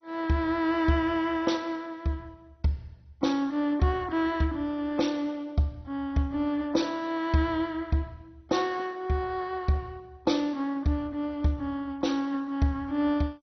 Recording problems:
lossy compression; MP2, log-spectral distance 3 dB, nothing above 6 kHz

